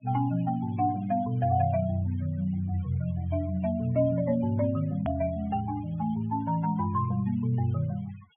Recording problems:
treble missing; nothing above 3.4 kHz
noise reduction artefacts; signal-to-artefact ratio 23 dB
edit click; at 5 s

